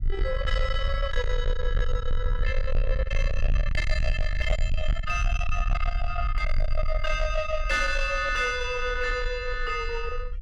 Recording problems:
distortion; soft clipping, signal-to-distortion ratio 8 dB
rumble; below 52 Hz, strongest tone 22 Hz, SNR 2 dB

